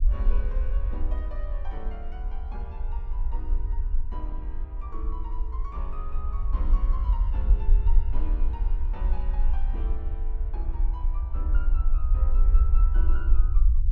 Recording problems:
rumble; below 48 Hz, SNR -15 dB

